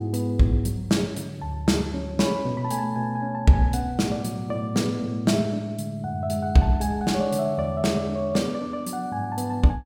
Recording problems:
none

